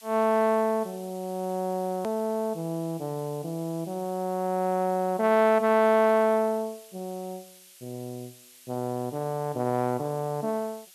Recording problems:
hiss; SNR 22 dB
hard cut with a click; at 2 s

